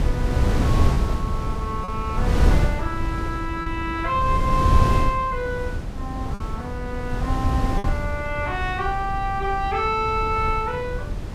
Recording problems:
wind noise; below 130 Hz, SNR -1 dB
packet loss; 2% of the sound replaced, filled with repeated pitch periods

